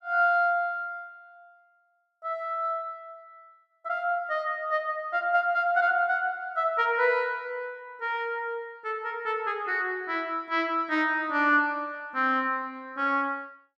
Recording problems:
none

